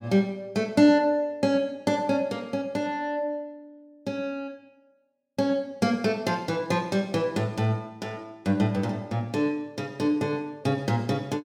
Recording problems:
none

